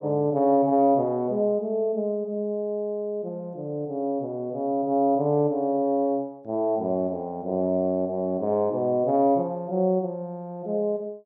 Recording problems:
none

